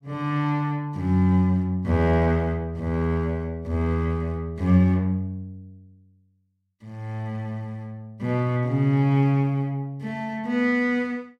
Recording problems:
none

